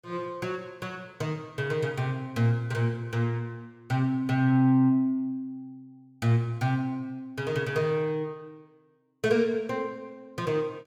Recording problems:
none

